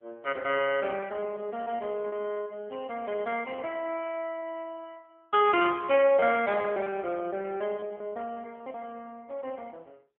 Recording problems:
phone line; 280 Hz to 3.2 kHz, AMR-NB
lost packets; 7% of the sound replaced, filled with repeated pitch periods

